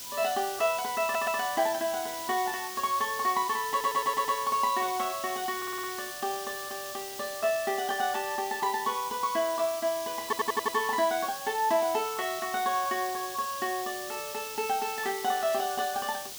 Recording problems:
background hiss; SNR 8 dB
audio stuttering; 4 times, first at 1 s

